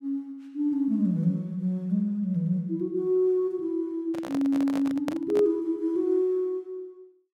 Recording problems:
microphone handling noise; from 4 to 5.5 s; peak -3 dB vs average level

